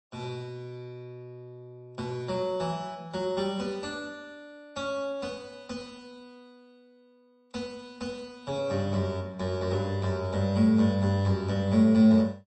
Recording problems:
lossy compression; MP3, log-spectral distance 2 dB, nothing above 8.2 kHz

